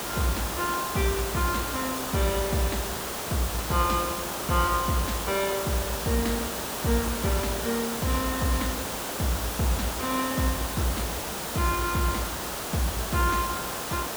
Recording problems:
hiss; SNR 2 dB

